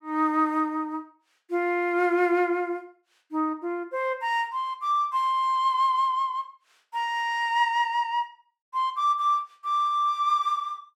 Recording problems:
none

